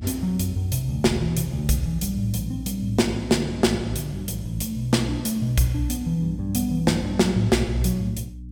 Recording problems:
hum; 60 Hz, harmonics up to 300 Hz, SNR 13 dB

